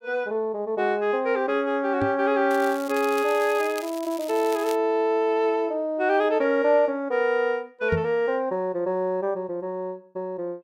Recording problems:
microphone bump; at 2 s and at 8 s; peak 0 dB vs average level
crackle; from 2.5 to 5 s; loose cable, SNR 17 dB

